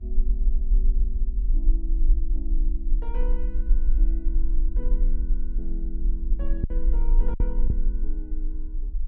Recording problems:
electrical hum; 50 Hz, harmonics up to 1 kHz, SNR 17 dB
low-frequency rumble; below 40 Hz, strongest tone 22 Hz, SNR -14 dB
lost packets; 1.6% of the sound replaced, filled with silence

